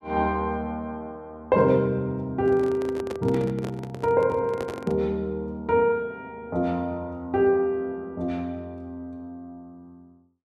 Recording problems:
microphone handling noise; from 2.5 to 5 s; peak -5 dB vs average level

